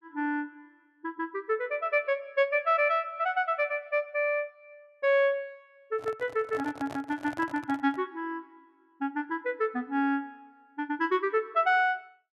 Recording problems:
microphone handling noise; from 6 to 8 s; peak -8 dB vs average level

